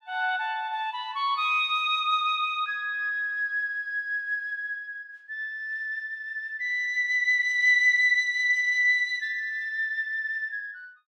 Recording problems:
none

